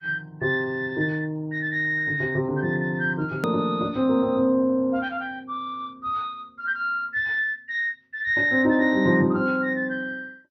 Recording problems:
lossy codec; MP2, log-spectral distance 2 dB, nothing above 16.6 kHz
click at an edit; at 3.5 s

